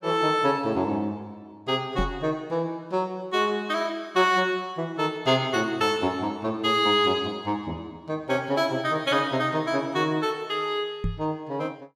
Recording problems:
microphone thump; at 2 s and at 11 s; peak +1 dB vs average level

